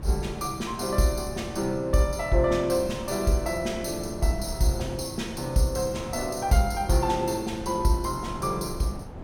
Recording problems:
wind noise; below 320 Hz, SNR 14 dB

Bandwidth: 17 kHz